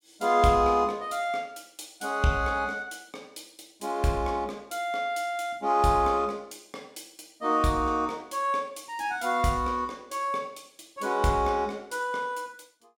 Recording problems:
none

